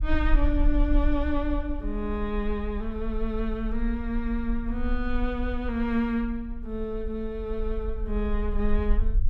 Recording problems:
rumble; below 48 Hz, SNR 2 dB

